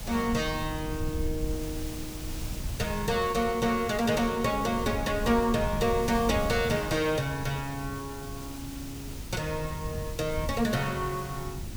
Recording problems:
hum; 50 Hz, harmonics up to 350 Hz, SNR 22 dB
hiss; slope -2 dB per octave, SNR 14 dB
wind noise; below 110 Hz, SNR 10 dB

